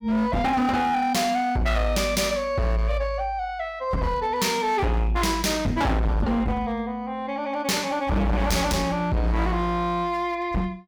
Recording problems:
distortion; hard clipping, signal-to-distortion ratio 7 dB

